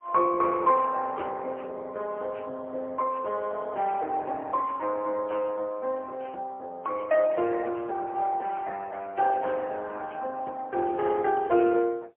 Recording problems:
phone line; 300 Hz to 3.1 kHz, AMR-NB, then MP3

